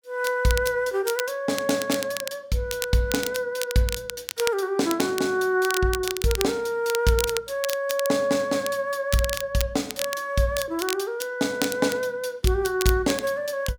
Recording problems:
crackling; vinyl, SNR 8 dB

